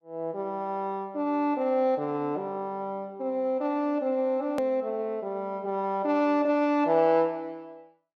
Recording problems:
edit click; at 4.5 s

